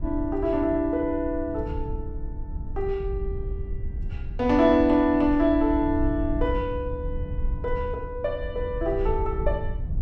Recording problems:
wind noise; below 76 Hz, SNR 8 dB

